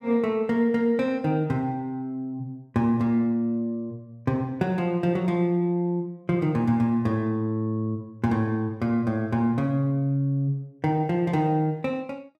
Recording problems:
none

